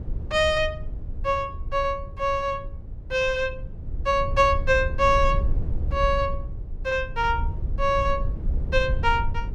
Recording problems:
low-frequency rumble; below 72 Hz, SNR 7 dB

